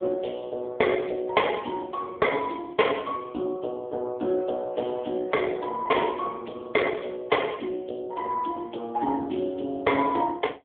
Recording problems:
telephone audio; 240 Hz to 3.5 kHz, AMR-NB

